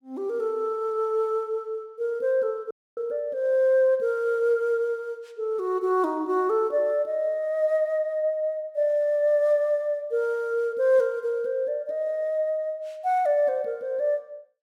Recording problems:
dropout; at 2.5 s

